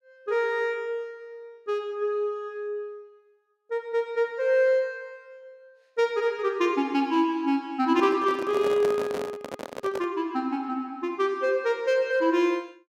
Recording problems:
microphone handling noise; from 8 to 10 s; peak -3 dB vs average level

